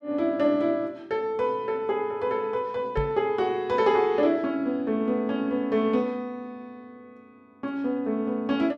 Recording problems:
microphone bump; at 3 s; peak -1 dB vs average level

